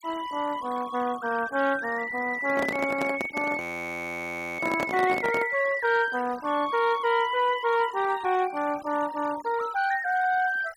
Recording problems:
noise reduction artefacts; signal-to-artefact ratio 19 dB
microphone handling noise; from 2.5 to 5.5 s; peak -1 dB vs average level
frozen audio; at 3.5 s for 1 s

